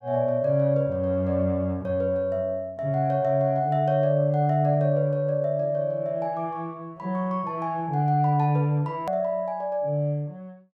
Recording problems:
edit click; at 9 s

